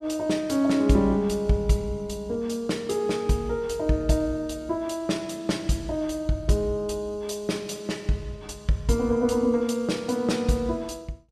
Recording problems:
none

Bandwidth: 14.5 kHz